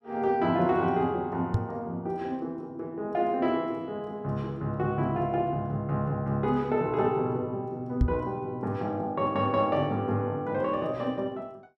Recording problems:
microphone thump; at 1.5 s and at 8 s; peak +8 dB vs average level

